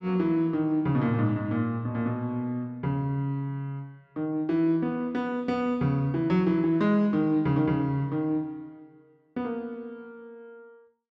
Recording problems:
none

